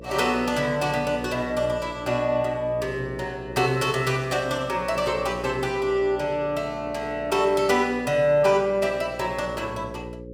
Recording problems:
hum; 60 Hz, harmonics up to 540 Hz, SNR 15 dB

